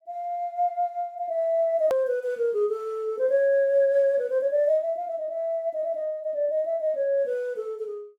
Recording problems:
hard cut with a click; at 2 s

